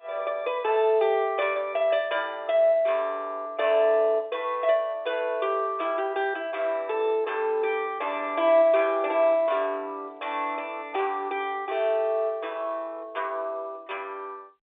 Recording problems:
telephone audio; 340 Hz to 3.6 kHz, G.711

